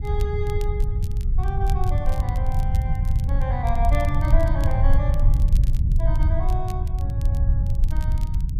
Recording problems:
low-frequency rumble; below 84 Hz, SNR -9 dB
crackling; vinyl, SNR 17 dB

